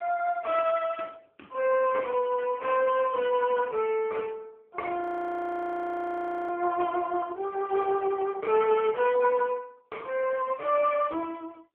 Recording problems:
phone line; 240 Hz to 2.6 kHz, AMR-NB
audio freezing; at 5 s for 1.5 s

